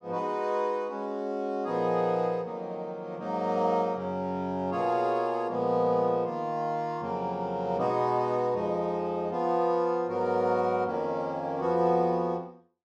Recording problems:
none

